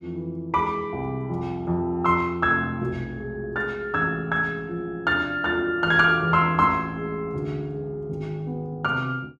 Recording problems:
none

